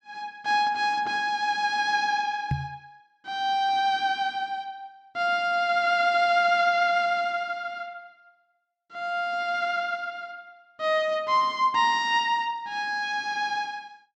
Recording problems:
microphone thump; at 2.5 s; peak +2 dB vs average level

